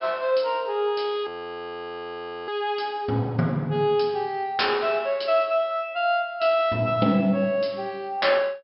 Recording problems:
treble cut off; nothing above 5.3 kHz
audio freezing; at 1.5 s for 1 s

